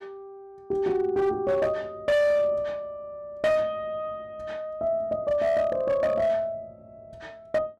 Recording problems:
distorted audio; hard clipping, signal-to-distortion ratio 10 dB

